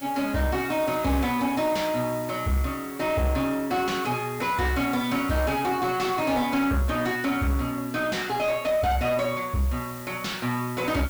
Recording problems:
distortion; soft clipping, signal-to-distortion ratio 10 dB
hiss; slope -2 dB per octave, SNR 16 dB

